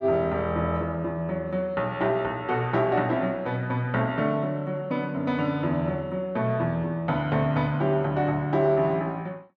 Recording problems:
none

